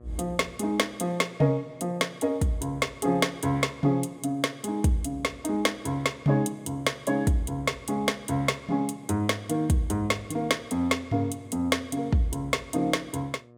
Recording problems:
hum; 60 Hz, harmonics up to 1.3 kHz, SNR 26 dB

